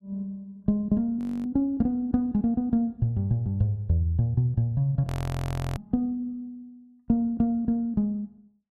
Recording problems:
frozen audio; at 1 s and at 5 s for 0.5 s

